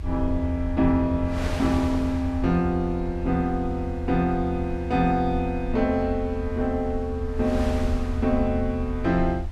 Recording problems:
rumble; below 78 Hz, SNR 7 dB
wind noise; below 1.9 kHz, SNR 16 dB

